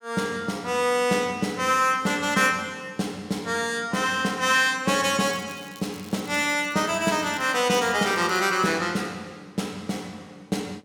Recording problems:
crackling; from 5.5 to 9 s; loose cable, SNR 23 dB

